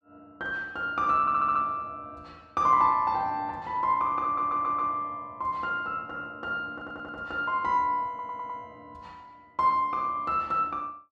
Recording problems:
audio stuttering; 4 times, first at 1 s

